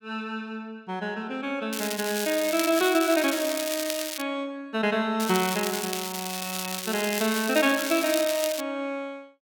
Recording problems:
crackling; from 1.5 to 4 s and from 5 to 8.5 s; loose cable, SNR 5 dB

